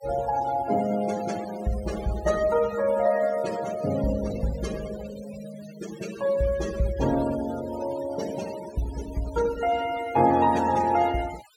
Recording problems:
denoising artefacts; signal-to-artefact ratio 15 dB

